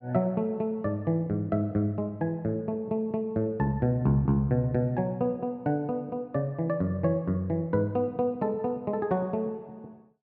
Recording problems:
none

